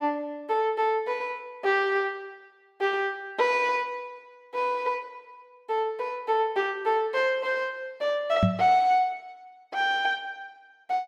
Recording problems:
microphone thump; at 8.5 s; peak +7 dB vs average level

